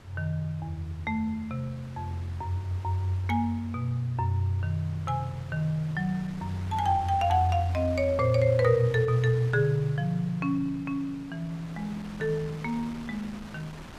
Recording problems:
wind on the microphone; below 1.6 kHz, SNR 18 dB

